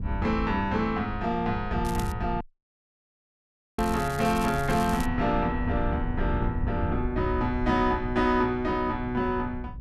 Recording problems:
wind on the microphone; below 100 Hz, SNR 7 dB
crackling; at 2 s and from 4 to 5 s; loose cable, SNR 15 dB
dropout; at 2.5 s for 1.5 s

